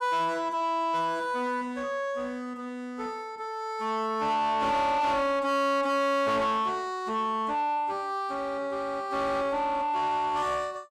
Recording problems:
distortion; soft clipping, signal-to-distortion ratio 7 dB

